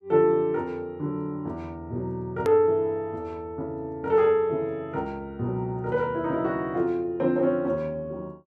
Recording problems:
click at an edit; at 2.5 s

